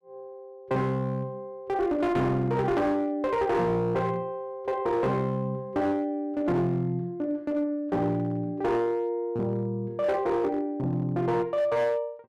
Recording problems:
distorted audio; hard clipping, signal-to-distortion ratio 12 dB

